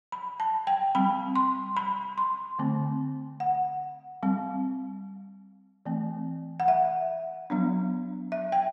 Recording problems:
none

